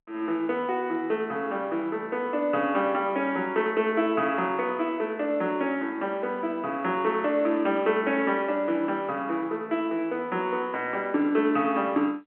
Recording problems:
phone line; 220 Hz to 3.3 kHz, G.711

